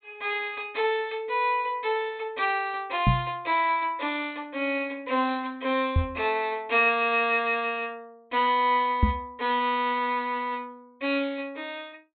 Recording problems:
treble missing; nothing above 4 kHz
knock on the microphone; at 3 s, at 6 s and at 9 s; peak +8 dB vs average level

